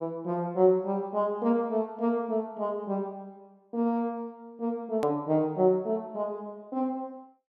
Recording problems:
edit click; at 5 s

